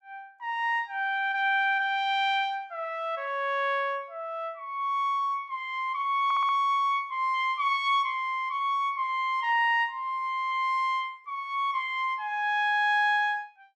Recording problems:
audio stuttering; at 6 s

